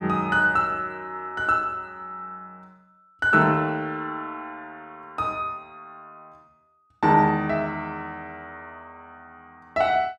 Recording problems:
none

